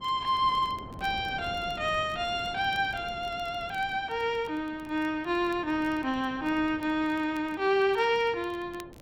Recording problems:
wind on the microphone; below 480 Hz, SNR 18 dB
crackling; vinyl, SNR 29 dB

